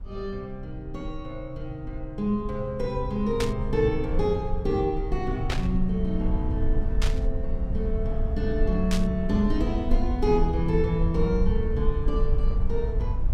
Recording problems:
low-frequency rumble; below 60 Hz, strongest tone 22 Hz, SNR 2 dB
burst of static; 4 times, first at 3.5 s; peak +2 dB vs average level

